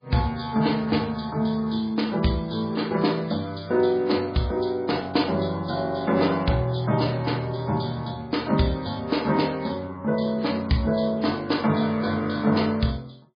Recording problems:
lossy codec; MP3, log-spectral distance 4 dB, nothing above 4.4 kHz

